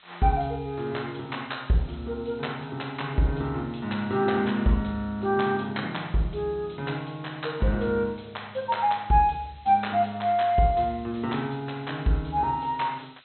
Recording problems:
treble cut off; nothing above 4.1 kHz
background hiss; SNR 27 dB

